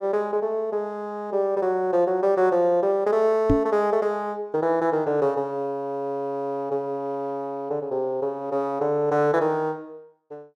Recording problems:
microphone bump; at 3.5 s; peak +6 dB vs average level

